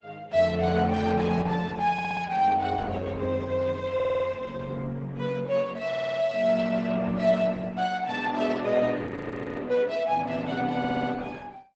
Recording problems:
lossy compression; Opus, log-spectral distance 4 dB, nothing above 8 kHz
stutter; 4 times, first at 2 s
audio freezing; at 9 s for 0.5 s

